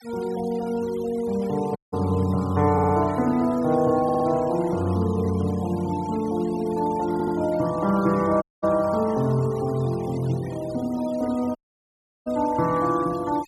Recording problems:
noise reduction artefacts; signal-to-artefact ratio 21 dB
dropout; at 2 s, at 8.5 s and at 12 s for 0.5 s
stutter; at 2.5 s, at 4 s and at 7 s

